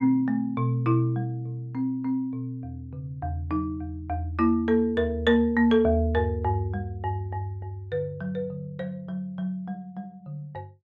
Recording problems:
none

